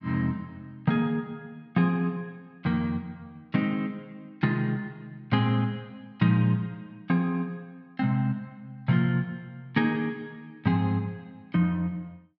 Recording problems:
none

